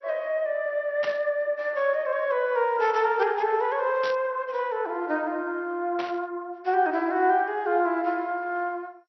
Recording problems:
lossy compression; MP2, log-spectral distance 2 dB, nothing above 5.8 kHz
static burst; at 1 s, at 4 s and at 6 s; peak -5 dB vs average level

